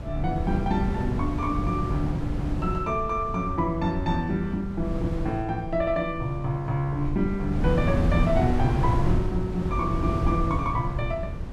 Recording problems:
rumble; below 84 Hz, SNR 11 dB
wind on the microphone; below 180 Hz, SNR 3 dB

